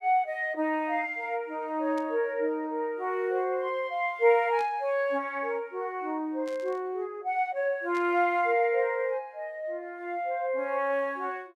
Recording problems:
static burst; 4 times, first at 2 s; peak -14 dB vs average level

